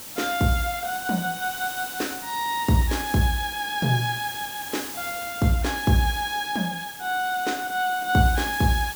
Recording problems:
hiss; slope -1 dB per octave, SNR 10 dB

